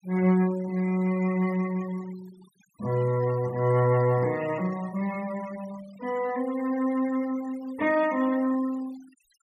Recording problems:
denoising artefacts; signal-to-artefact ratio 20 dB

